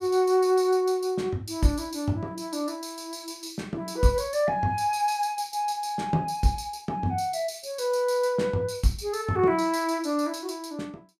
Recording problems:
none

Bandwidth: 15.5 kHz